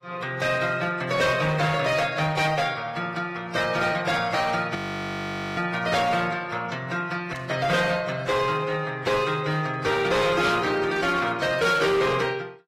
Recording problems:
codec artefacts; AAC, then AAC, log-spectral distance 4 dB
distortion; hard clipping, signal-to-distortion ratio 10 dB
static burst; at 2.5 s, at 4.5 s and at 7.5 s; peak -15 dB vs average level
frozen audio; at 5 s for 1 s

